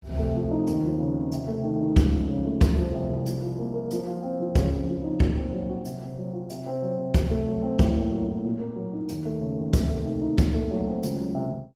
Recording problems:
lossy codec; Opus, log-spectral distance 2 dB, nothing above 18.9 kHz

